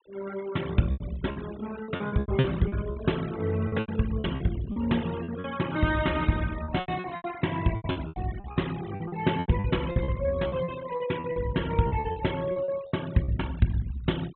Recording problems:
treble missing; nothing above 3.9 kHz
noise reduction artefacts; signal-to-artefact ratio 16 dB
lost packets; 14% of the sound replaced, filled with repeated pitch periods

